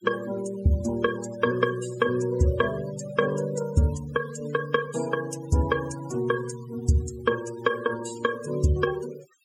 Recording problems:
noise reduction artefacts; signal-to-artefact ratio 14 dB

